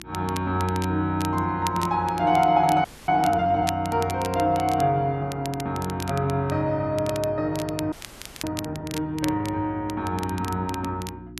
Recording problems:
hum; 60 Hz, harmonics up to 360 Hz, SNR 19 dB
crackling; vinyl, SNR 15 dB
frozen audio; at 3 s and at 8 s for 0.5 s

